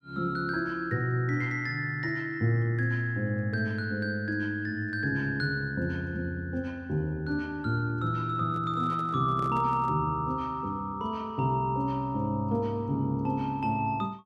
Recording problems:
microphone handling noise; from 8.5 to 10 s; peak -10 dB vs average level

